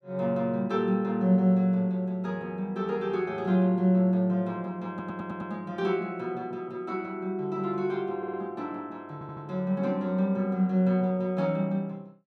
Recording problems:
audio stuttering; at 5 s, at 8 s and at 9 s

